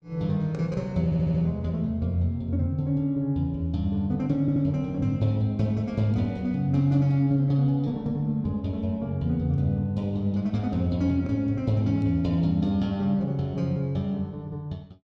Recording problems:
stutter; at 1 s and at 4.5 s

